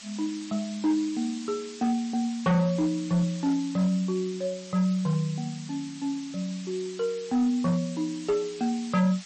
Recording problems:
codec artefacts; MP3, log-spectral distance 7 dB, nothing above 8.2 kHz
distortion; hard clipping, signal-to-distortion ratio 10 dB
background hiss; slope +3 dB per octave, SNR 16 dB

